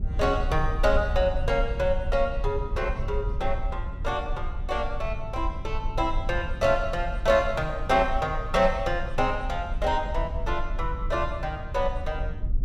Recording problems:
low-frequency rumble; below 62 Hz, SNR 6 dB

